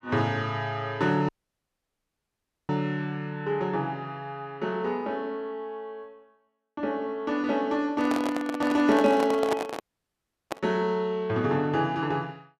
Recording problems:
audio cutting out; at 1.5 s for 1.5 s and at 10 s for 0.5 s
microphone handling noise; from 8 to 11 s; peak +2 dB vs average level

